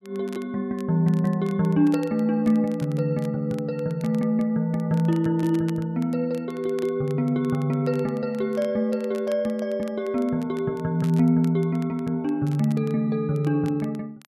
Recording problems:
crackle; vinyl, SNR 26 dB

